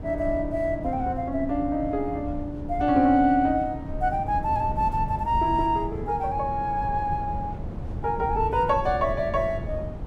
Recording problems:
wind on the microphone; below 170 Hz, SNR 9 dB

